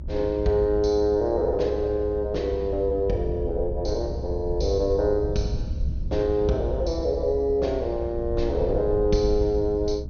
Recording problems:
treble cut off; nothing above 6.6 kHz
hum; 50 Hz, harmonics up to 900 Hz, SNR 21 dB
rumble; below 82 Hz, SNR 8 dB

